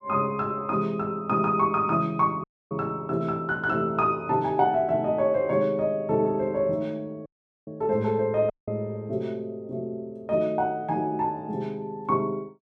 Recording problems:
dropout; at 2.5 s, at 7.5 s and at 8.5 s

